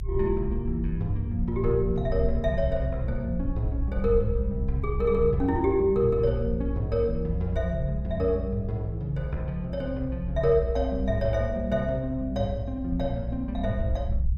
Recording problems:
low-frequency rumble; below 64 Hz, SNR 5 dB

